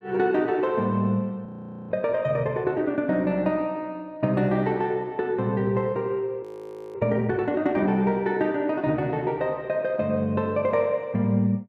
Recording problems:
frozen audio; at 1.5 s and at 6.5 s for 0.5 s

